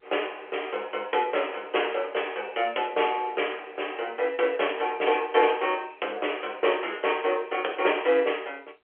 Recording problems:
telephone audio; 320 Hz to 3.3 kHz, G.711

